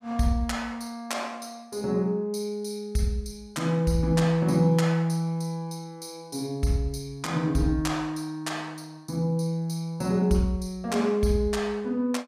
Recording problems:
none

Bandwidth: 15 kHz